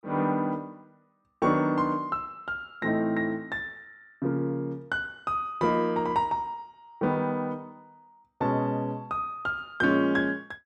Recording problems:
none

